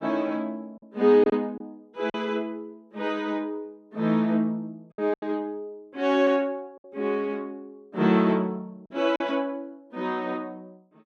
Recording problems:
packet loss; 4% of the sound replaced, filled with silence

